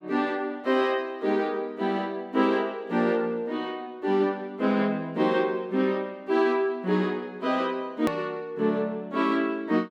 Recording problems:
click at an edit; at 8 s

